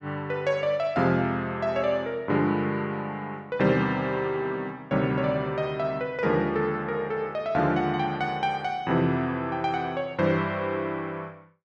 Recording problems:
none

